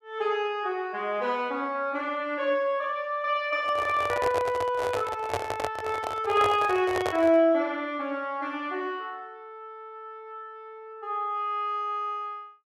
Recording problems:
microphone handling noise; from 3.5 to 7.5 s; peak +2 dB vs average level

